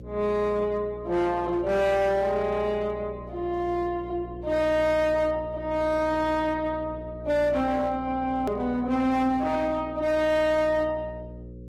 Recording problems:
lossy codec; Opus, then Vorbis, log-spectral distance 2 dB, nothing above 15.1 kHz
distortion; hard clipping, signal-to-distortion ratio 10 dB
hum; 60 Hz, harmonics up to 540 Hz, SNR 16 dB
edit click; at 8.5 s

